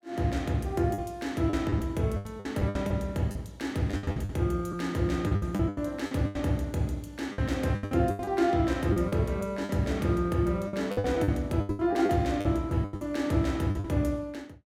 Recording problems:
packet loss; 13% of the sound replaced, filled with the last packet

